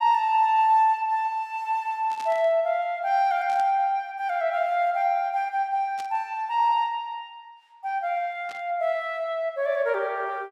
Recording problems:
static burst; 4 times, first at 2 s; peak -13 dB vs average level

